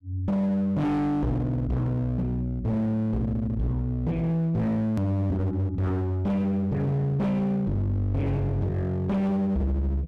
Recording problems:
distorted audio; hard clipping, uneven, signal-to-distortion ratio 8 dB
click at an edit; at 5 s

